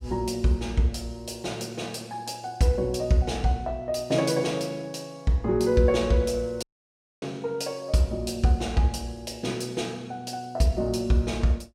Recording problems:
dropout; at 6.5 s for 0.5 s

